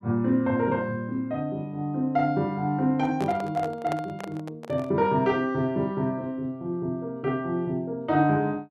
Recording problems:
handling noise; from 3 to 5 s; peak -4 dB vs average level

